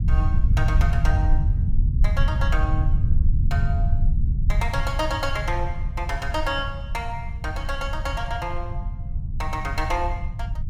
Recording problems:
low-frequency rumble; below 84 Hz, SNR -5 dB

